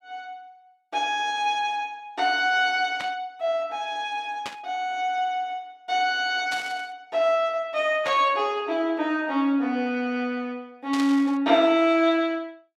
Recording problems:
burst of static; 5 times, first at 3 s; peak -5 dB vs average level

